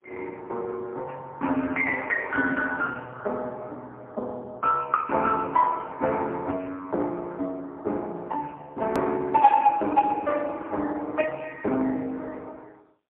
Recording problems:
telephone audio; 220 Hz to 2.6 kHz, AMR-NB, then MP3
click at an edit; at 9 s

